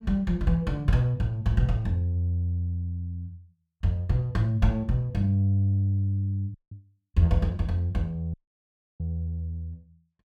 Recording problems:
dropout; at 6.5 s and at 8.5 s for 0.5 s

